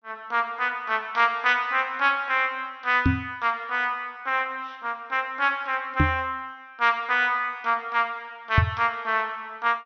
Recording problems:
treble missing; nothing above 6.3 kHz
knock on the microphone; at 3 s, at 6 s and at 8.5 s; peak +8 dB vs average level

